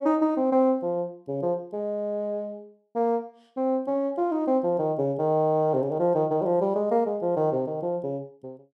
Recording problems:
none

